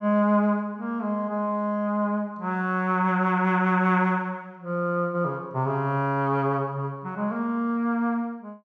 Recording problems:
none

